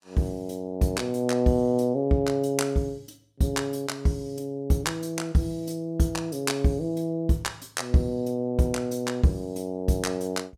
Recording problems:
none

